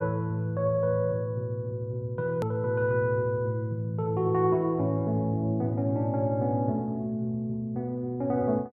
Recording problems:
hard cut with a click; at 2.5 s

